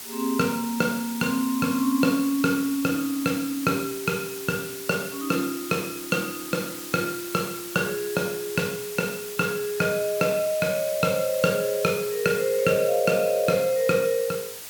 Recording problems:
hiss; slope +1 dB per octave, SNR 10 dB

